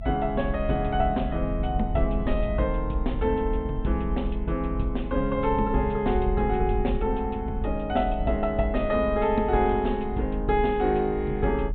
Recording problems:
low-pass filter; nothing above 4 kHz
low-frequency rumble; below 60 Hz, strongest tone 40 Hz, SNR 6 dB

